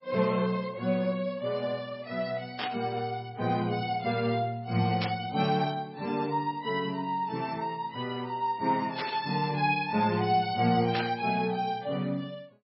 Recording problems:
lossy codec; MP3, log-spectral distance 3 dB, nothing above 5.2 kHz
static burst; 4 times, first at 2.5 s; peak 0 dB vs average level

